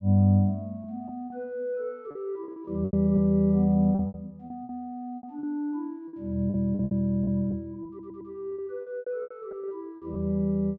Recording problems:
lost packets; 12% of the sound replaced, filled with repeated pitch periods
stutter; at 8 s

